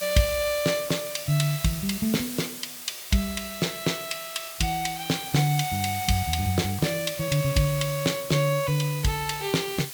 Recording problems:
background hiss; slope +2 dB per octave, SNR 9 dB

